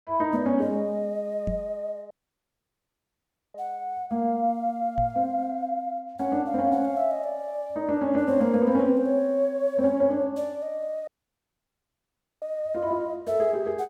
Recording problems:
microphone bump; at 1.5 s and at 5 s; peak -2 dB vs average level
dropout; at 2 s for 1.5 s and at 11 s for 1.5 s

